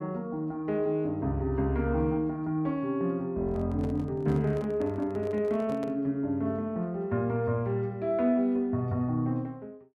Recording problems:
microphone handling noise; from 3.5 to 6 s; peak -9 dB vs average level

